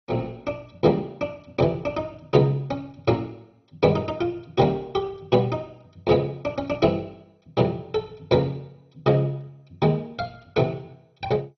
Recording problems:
codec artefacts; MP2, log-spectral distance 2 dB, nothing above 6 kHz

